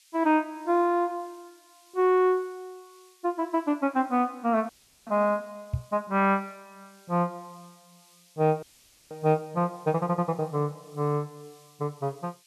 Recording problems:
background hiss; SNR 30 dB
frozen audio; at 4.5 s and at 8.5 s
microphone bump; at 5.5 s; peak +2 dB vs average level

